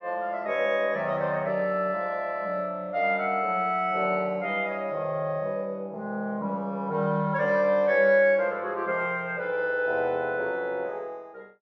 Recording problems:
none

